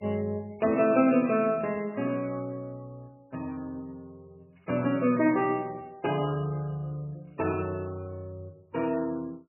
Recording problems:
lossy compression; MP3, log-spectral distance 2 dB, nothing above 2.7 kHz

